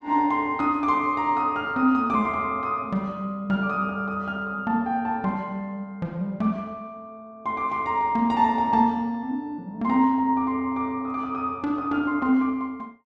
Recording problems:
none

